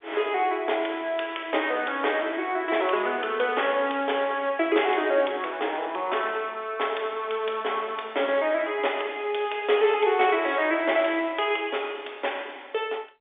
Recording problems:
telephone audio; 340 Hz to 3.6 kHz, G.711

